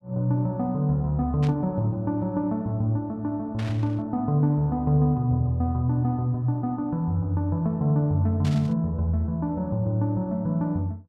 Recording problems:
burst of static; at 1.5 s, at 3.5 s and at 8.5 s; peak -10 dB vs average level

